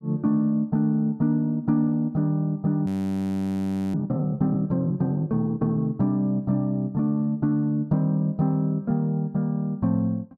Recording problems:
audio freezing; at 3 s for 1 s

